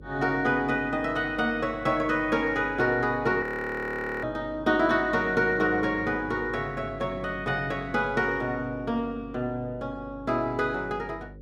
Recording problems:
hum; 50 Hz, harmonics up to 550 Hz, SNR 19 dB
frozen audio; at 3.5 s for 1 s

